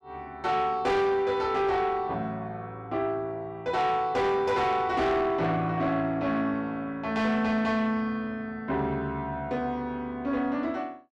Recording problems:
distorted audio; soft clipping, signal-to-distortion ratio 11 dB

